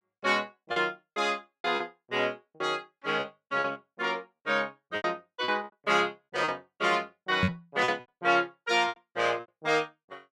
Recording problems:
lost packets; 12% of the sound replaced, filled with repeated pitch periods
microphone bump; at 7.5 s; peak +6 dB vs average level

